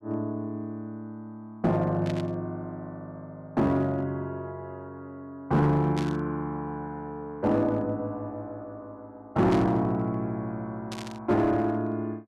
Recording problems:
distorted audio; hard clipping, uneven, signal-to-distortion ratio 11 dB
burst of static; 4 times, first at 2 s; peak -6 dB vs average level

